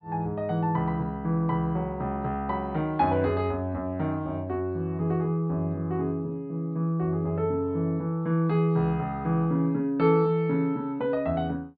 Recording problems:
treble missing; nothing above 5 kHz

